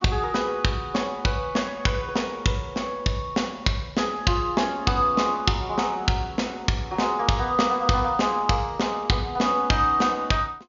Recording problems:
treble cut off; nothing above 7.1 kHz

